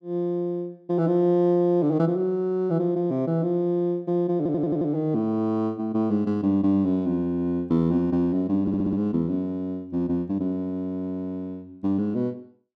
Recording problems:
audio stuttering; at 4.5 s and at 8.5 s

